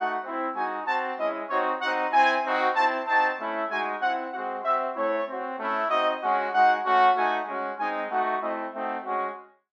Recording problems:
none

